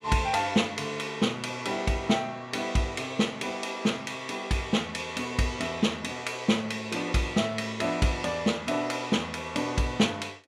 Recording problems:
none

